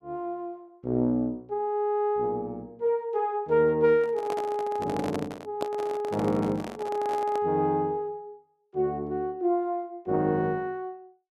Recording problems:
microphone handling noise; from 4 to 7.5 s; peak -1 dB vs average level

